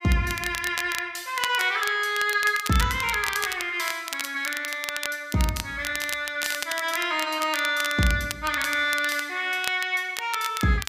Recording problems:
crackling; vinyl, SNR 9 dB

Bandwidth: 15 kHz